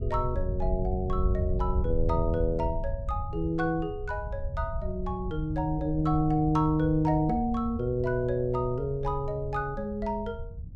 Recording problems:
low-frequency rumble; below 84 Hz, SNR 6 dB

